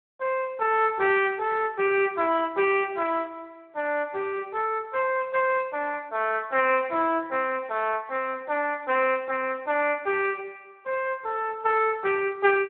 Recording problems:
telephone audio; 280 Hz to 3.1 kHz, Speex

